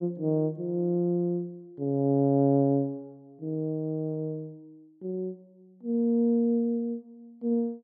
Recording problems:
none

